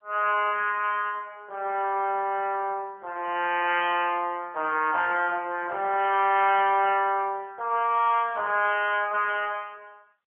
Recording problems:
telephone audio; 260 Hz to 3.2 kHz, AMR-NB

